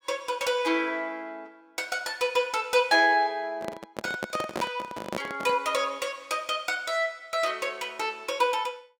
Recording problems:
microphone handling noise; from 3.5 to 5.5 s; peak 0 dB vs average level

